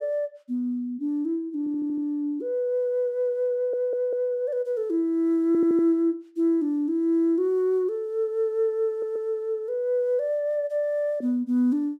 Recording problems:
stutter; 4 times, first at 1.5 s

